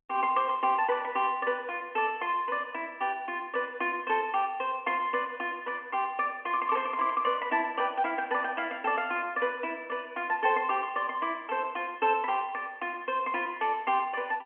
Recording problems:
phone line; 190 Hz to 3.3 kHz, G.711

